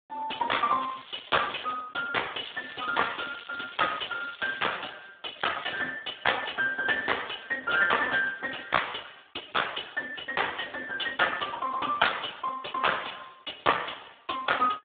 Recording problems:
telephone audio; 86 Hz to 3.6 kHz, Speex
crackling; at 1 s, from 2.5 to 5 s and at 5.5 s; loose cable, SNR 16 dB

